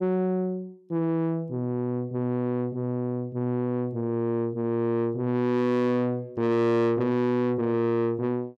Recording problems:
distorted audio; soft clipping, signal-to-distortion ratio 7 dB

